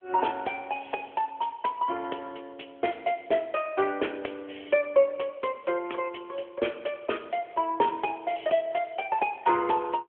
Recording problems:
telephone audio; 280 Hz to 3.4 kHz, AMR-NB

